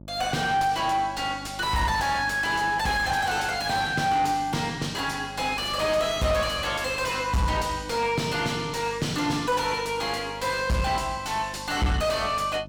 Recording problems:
distorted audio; soft clipping, signal-to-distortion ratio 5 dB
electrical hum; 50 Hz, harmonics up to 650 Hz, SNR 19 dB

